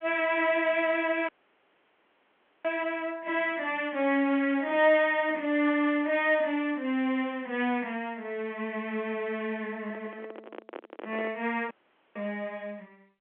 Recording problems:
telephone audio; 240 Hz to 3.4 kHz, G.711
audio cutting out; at 1.5 s for 1.5 s and at 12 s
handling noise; from 10 to 11 s; peak -8 dB vs average level

